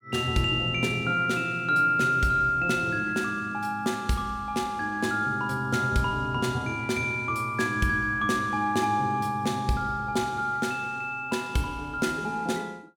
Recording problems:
none

